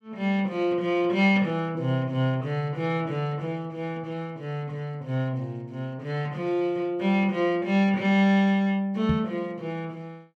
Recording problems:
microphone bump; at 9 s; peak +5 dB vs average level

